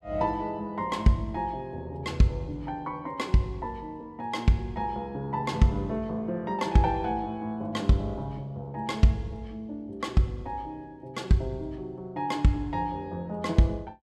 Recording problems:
none

